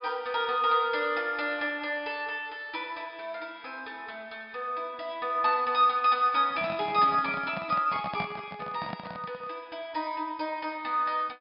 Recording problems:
treble cut off; nothing above 5.5 kHz
handling noise; from 6.5 to 9.5 s; peak -2 dB vs average level

